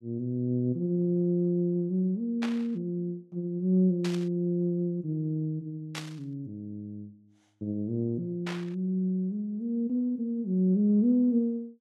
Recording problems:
burst of static; 4 times, first at 2.5 s; peak -4 dB vs average level

